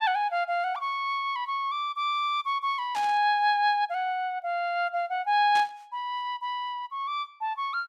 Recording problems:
burst of static; at 3 s and at 5.5 s; peak -7 dB vs average level

